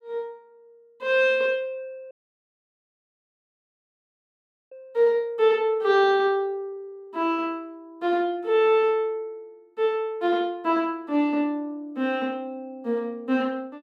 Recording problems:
audio cutting out; at 2 s for 2.5 s

